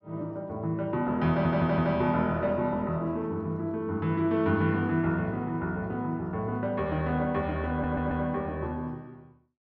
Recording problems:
audio stuttering; at 1.5 s and at 7.5 s

